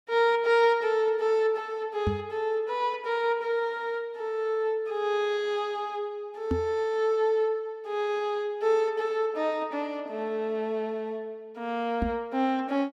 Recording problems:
microphone bump; at 2 s, at 6.5 s and at 12 s; peak +3 dB vs average level

